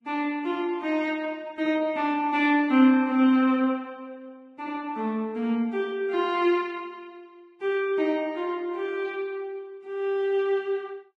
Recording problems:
codec artefacts; Vorbis, log-spectral distance 2 dB, nothing above 10.4 kHz

